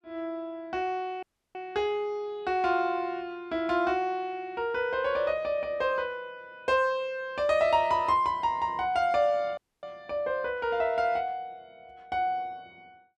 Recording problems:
dropout; at 1 s and at 9.5 s

